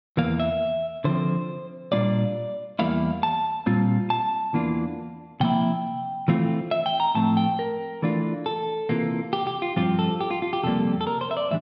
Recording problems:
none

